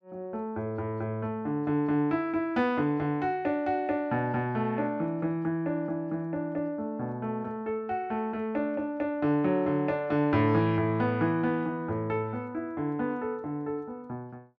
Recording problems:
none

